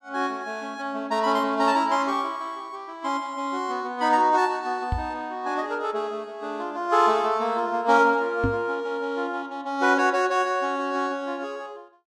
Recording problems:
microphone thump; at 5 s and at 8.5 s; peak +3 dB vs average level

